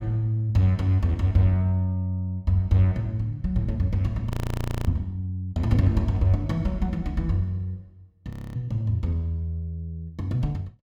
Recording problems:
audio freezing; at 4.5 s for 0.5 s and at 8.5 s

